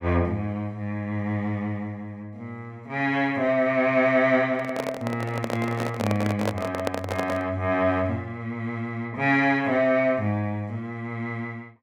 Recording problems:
microphone handling noise; from 4.5 to 7.5 s; peak +2 dB vs average level

